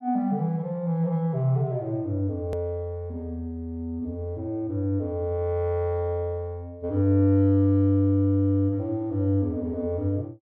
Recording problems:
edit click; at 2.5 s

